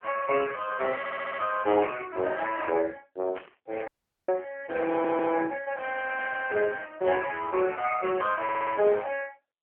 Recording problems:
phone line; 280 Hz to 3.1 kHz, AMR-NB
stutter; at 1 s, at 5 s and at 8.5 s
static burst; at 2 s, at 3.5 s and at 6 s; peak -7 dB vs average level
dropout; at 4 s

